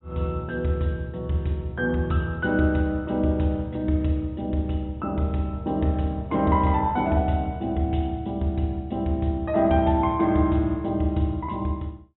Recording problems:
low-pass filter; nothing above 3.9 kHz

